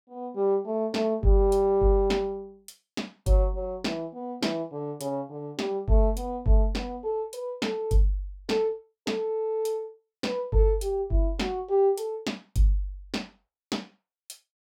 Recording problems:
none

